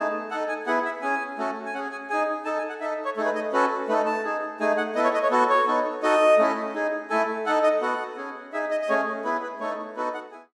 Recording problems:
none

